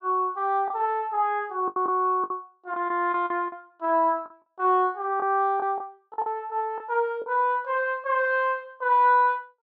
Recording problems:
packet loss; 7% of the sound replaced, filled with the last packet

